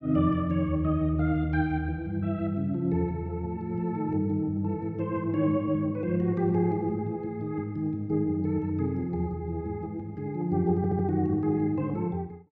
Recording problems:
stutter; at 11 s

